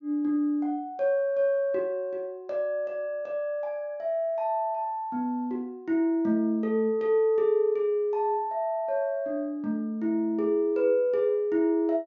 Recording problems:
low-pass filter; nothing above 6.8 kHz

